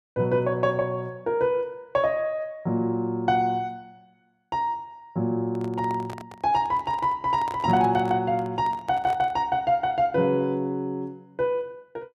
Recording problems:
microphone handling noise; from 5.5 to 9.5 s; peak -9 dB vs average level

